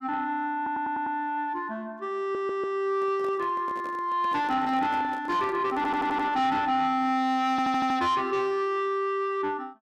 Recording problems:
distortion; soft clipping, signal-to-distortion ratio 11 dB
audio stuttering; 4 times, first at 0.5 s
microphone handling noise; from 3 to 7 s; peak -11 dB vs average level

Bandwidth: 14.5 kHz